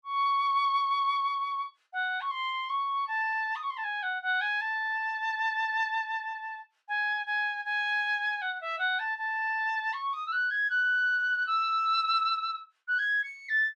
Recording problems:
none

